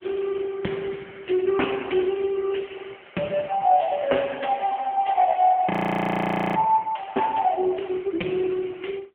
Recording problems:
telephone audio; 240 Hz to 3.4 kHz, AMR-NB
audio freezing; at 5.5 s for 1 s

